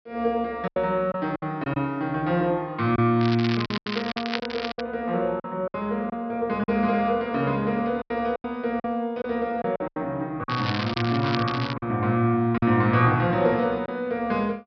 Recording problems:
treble cut off; nothing above 5.5 kHz
lost packets; 8% of the sound replaced, filled with silence
crackle; from 3 to 5 s and from 11 to 12 s; loose cable, SNR 8 dB

